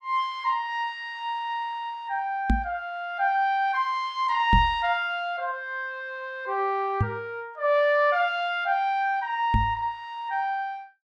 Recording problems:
knock on the microphone; 4 times, first at 2.5 s; peak +6 dB vs average level

